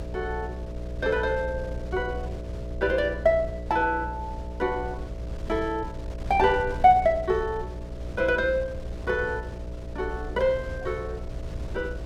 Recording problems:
hum; 60 Hz, harmonics up to 660 Hz, SNR 11 dB
wind on the microphone; below 110 Hz, SNR 15 dB

